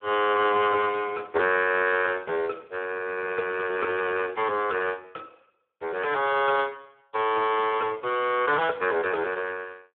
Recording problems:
phone line; 320 Hz to 3.5 kHz, Speex

